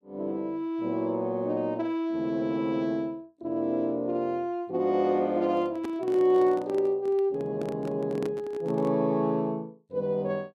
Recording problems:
handling noise; from 5.5 to 9 s; peak -4 dB vs average level

